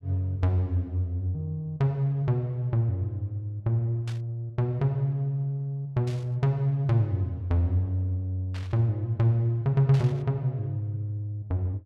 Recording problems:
static burst; 4 times, first at 4 s; peak -12 dB vs average level

